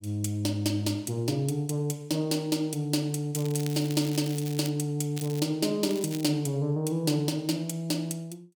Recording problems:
crackle; from 3.5 to 4.5 s, at 5 s and at 6 s; loose cable, SNR 14 dB

